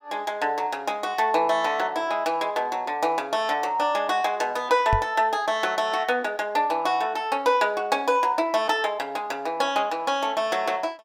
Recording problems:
knock on the microphone; at 5 s; peak +2 dB vs average level

